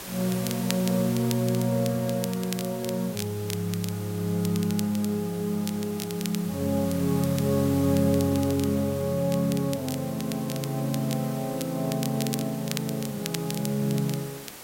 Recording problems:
hiss; slope -2 dB per octave, SNR 13 dB
crackling; vinyl, SNR 12 dB

